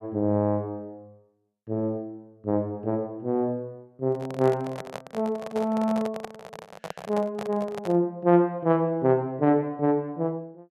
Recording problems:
handling noise; from 4 to 8 s; peak -5 dB vs average level

